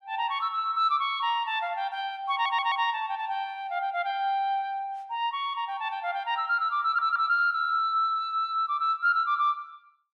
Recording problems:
stutter; at 2.5 s and at 7 s

